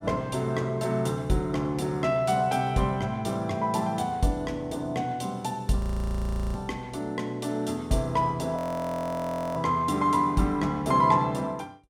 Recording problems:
audio freezing; at 6 s for 1 s and at 8.5 s for 1 s

